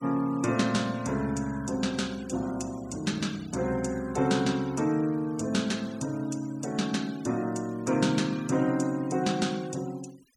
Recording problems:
denoising artefacts; signal-to-artefact ratio 21 dB

